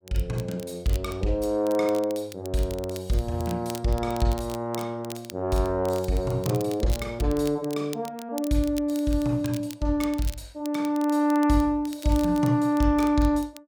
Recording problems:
crackle; vinyl, SNR 18 dB

